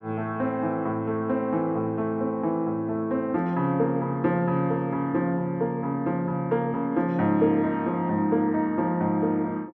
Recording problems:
none

